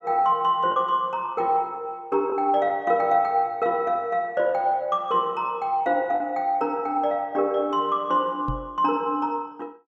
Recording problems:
packet loss; 1.4% of the sound replaced, filled with the last packet
microphone thump; at 8.5 s; peak -3 dB vs average level

